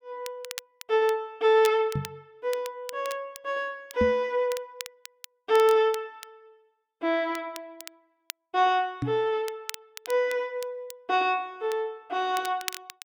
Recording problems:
crackling; vinyl, SNR 16 dB
microphone thump; at 2 s, at 4 s and at 9 s; peak +2 dB vs average level

